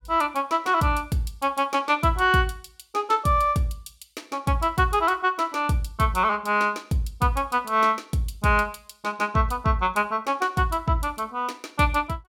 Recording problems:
none

